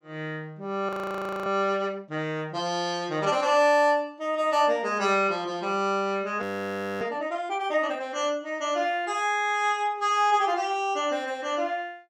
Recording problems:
frozen audio; at 1 s for 0.5 s and at 6.5 s for 0.5 s

